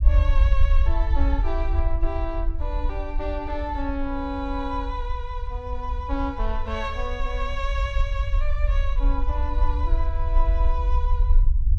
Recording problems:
rumble; below 58 Hz, SNR -5 dB

